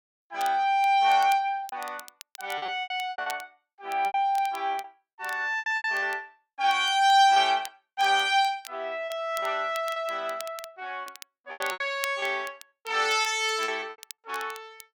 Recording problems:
crackle; vinyl, SNR 20 dB
packet loss; 10% of the sound replaced, filled with repeated pitch periods

